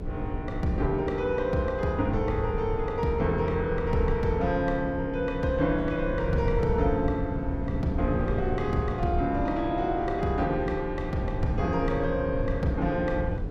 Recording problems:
hum; 60 Hz, harmonics up to 480 Hz, SNR 13 dB
rumble; below 120 Hz, SNR 7 dB

